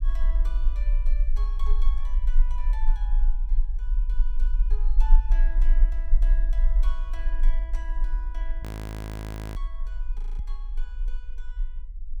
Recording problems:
low-frequency rumble; below 38 Hz, strongest tone 22 Hz, SNR -19 dB
audio freezing; at 8.5 s for 1 s and at 10 s

